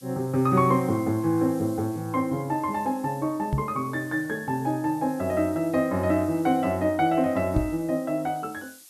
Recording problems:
background hiss; slope +3 dB per octave, SNR 23 dB
microphone thump; at 3.5 s and at 7.5 s; peak +3 dB vs average level

